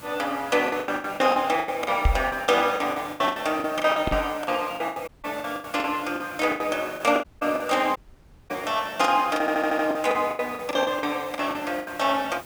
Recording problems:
hiss; slope -4 dB per octave, SNR 20 dB
packet loss; 18% of the sound replaced, filled with the last packet
microphone bump; at 2 s and at 4 s; peak +7 dB vs average level
dropout; at 5 s, at 7 s and at 8 s for 0.5 s
audio stuttering; at 9.5 s

